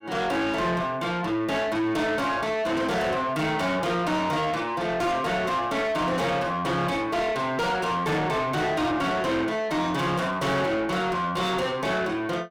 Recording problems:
distorted audio; soft clipping, signal-to-distortion ratio 6 dB

